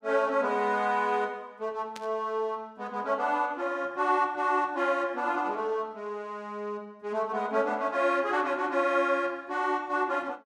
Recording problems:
burst of static; at 2 s; peak -9 dB vs average level

